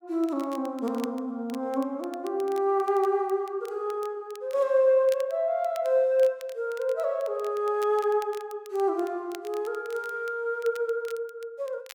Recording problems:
crackle; vinyl, SNR 24 dB

